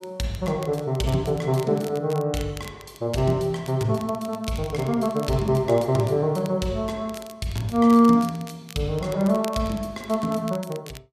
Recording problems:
crackling; vinyl, SNR 21 dB

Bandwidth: 14.5 kHz